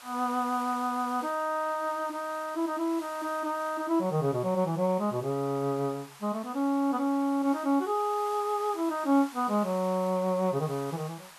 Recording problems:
hiss; SNR 18 dB

